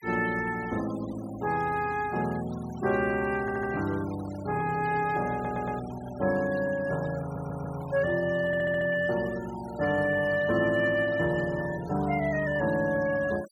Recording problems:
denoising artefacts; signal-to-artefact ratio 19 dB
stutter; 4 times, first at 3.5 s

